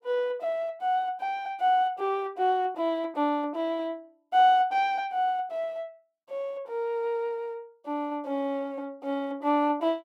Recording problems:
none

